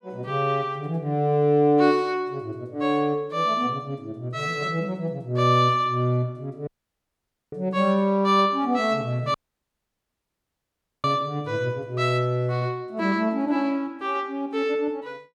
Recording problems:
dropout; at 6.5 s for 1 s and at 9.5 s for 1.5 s

